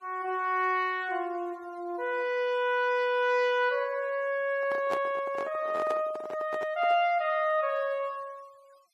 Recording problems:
noise reduction artefacts; signal-to-artefact ratio 27 dB
handling noise; from 4.5 to 7 s; peak -2 dB vs average level

